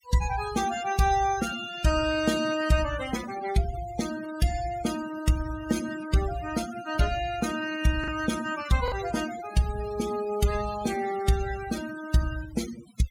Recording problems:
denoising artefacts; signal-to-artefact ratio 11 dB
packet loss; 0.6% of the sound replaced, filled with the last packet

